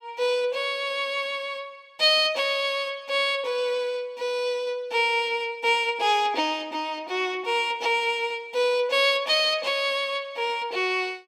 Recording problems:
none

